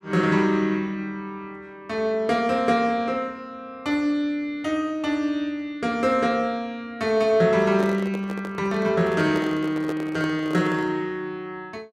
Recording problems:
microphone handling noise; from 7.5 to 11 s; peak -3 dB vs average level

